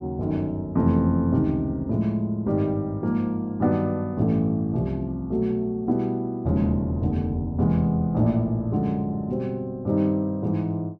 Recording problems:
none

